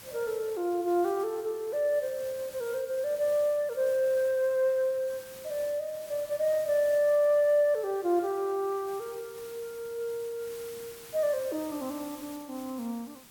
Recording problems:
hiss; slope -1 dB per octave, SNR 18 dB

